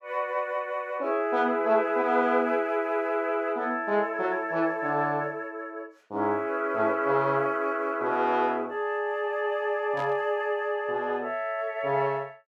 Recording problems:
burst of static; at 10 s; peak -12 dB vs average level

